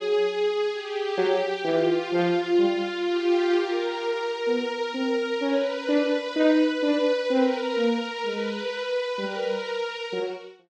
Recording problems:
none

